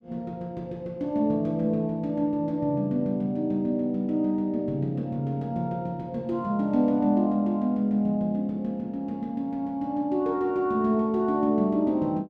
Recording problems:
none

